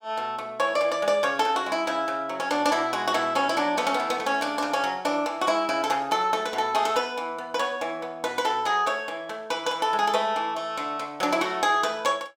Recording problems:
none

